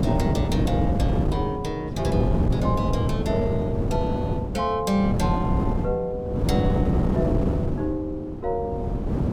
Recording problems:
wind noise; below 270 Hz, SNR -3 dB

